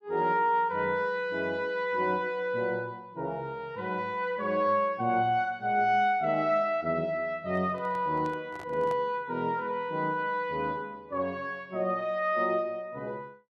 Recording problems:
handling noise; from 7.5 to 9 s; peak -10 dB vs average level

